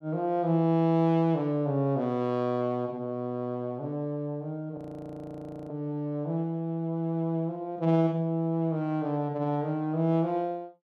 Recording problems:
frozen audio; at 5 s for 1 s

